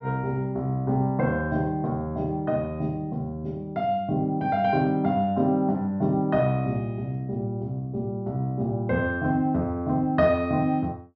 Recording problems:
treble cut off; nothing above 6.3 kHz

